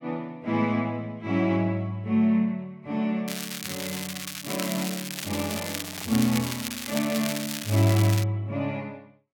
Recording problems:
crackling; from 3.5 to 8.5 s; loose cable, SNR 6 dB
microphone handling noise; from 5 to 7.5 s; peak -12 dB vs average level

